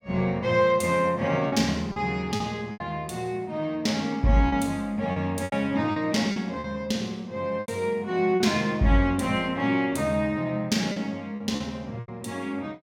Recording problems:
lost packets; 6% of the sound replaced, filled with repeated pitch periods

